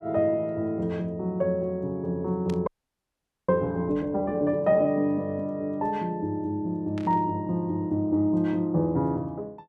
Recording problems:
burst of static; at 2.5 s and at 7 s; peak -12 dB vs average level
frozen audio; at 2.5 s for 1 s

